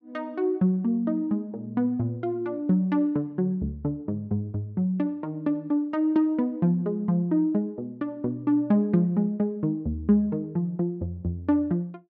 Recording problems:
none

